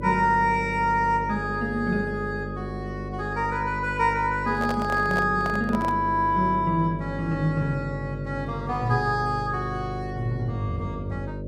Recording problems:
electrical hum; 50 Hz, harmonics up to 600 Hz, SNR 9 dB
handling noise; from 4.5 to 6 s; peak -3 dB vs average level

